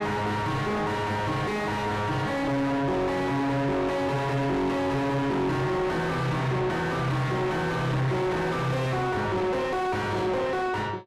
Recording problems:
distortion; soft clipping, signal-to-distortion ratio 6 dB

